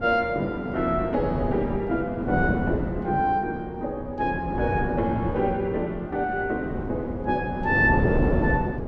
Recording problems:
wind noise; below 400 Hz, SNR 4 dB

